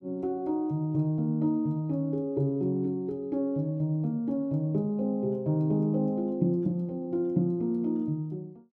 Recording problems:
none

